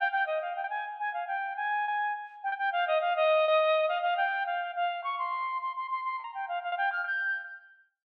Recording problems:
lost packets; 5% of the sound replaced, filled with repeated pitch periods

